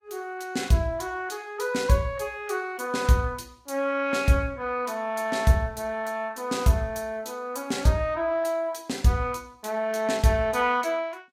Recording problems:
lossy compression; Vorbis, log-spectral distance 3 dB, nothing above 15.1 kHz

